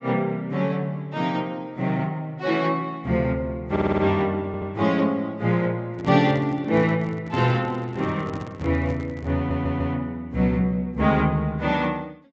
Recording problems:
treble cut off; nothing above 8 kHz
audio stuttering; at 3.5 s, at 4.5 s and at 9.5 s
microphone handling noise; from 6 to 10 s; peak -4 dB vs average level

